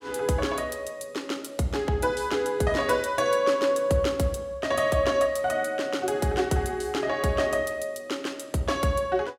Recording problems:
none

